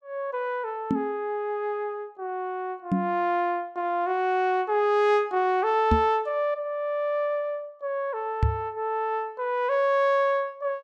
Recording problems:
knock on the microphone; 4 times, first at 1 s; peak +6 dB vs average level

